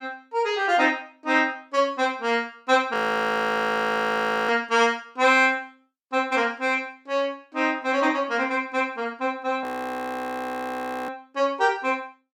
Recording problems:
frozen audio; at 3 s for 1.5 s and at 9.5 s for 1.5 s

